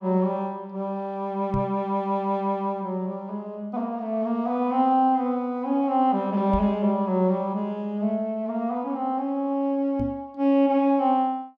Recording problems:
microphone bump; at 1.5 s, at 6.5 s and at 10 s; peak -1 dB vs average level

